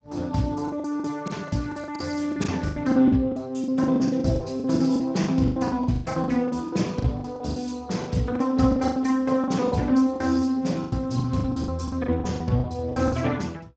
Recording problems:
codec artefacts; Speex, log-spectral distance 3 dB, nothing above 7.6 kHz
lost packets; 18% of the sound replaced, filled with the last packet

